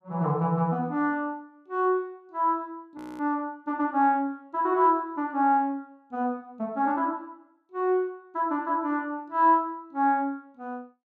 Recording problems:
frozen audio; at 3 s

